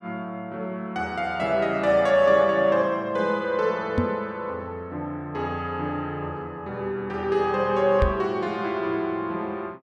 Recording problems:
microphone thump; at 4 s and at 8 s; peak +5 dB vs average level

